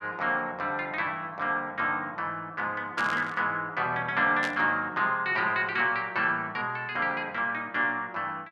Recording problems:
burst of static; at 3 s and at 4.5 s; peak -3 dB vs average level

